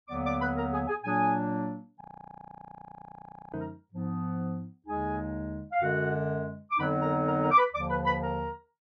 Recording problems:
frozen audio; at 2 s for 1.5 s

